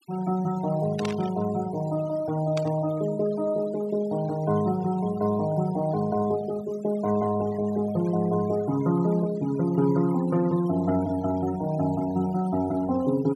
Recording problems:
noise reduction artefacts; signal-to-artefact ratio 19 dB
static burst; at 1 s and at 2.5 s; peak -5 dB vs average level

